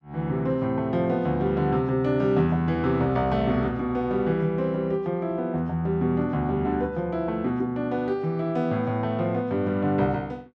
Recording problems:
none

